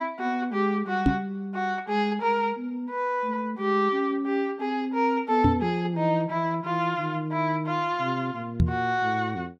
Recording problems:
microphone thump; at 1 s, at 5.5 s and at 8.5 s; peak +8 dB vs average level

